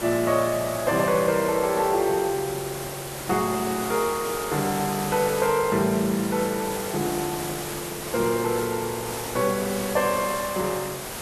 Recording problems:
background hiss; slope -4 dB per octave, SNR 7 dB

